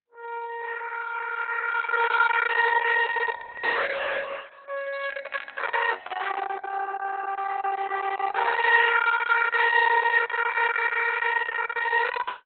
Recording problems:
lossy codec; Opus, log-spectral distance 6 dB, nothing above 3.9 kHz

